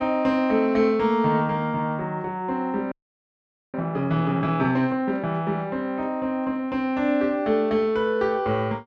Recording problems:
audio freezing; at 3 s for 1 s

